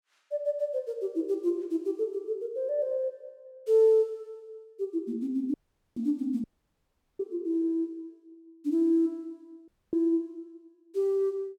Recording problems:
dropout; at 5.5 s, at 6.5 s for 1 s and at 9.5 s

